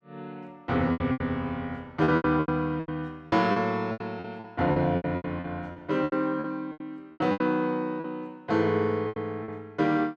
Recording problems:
lost packets; 15% of the sound replaced, filled with repeated pitch periods

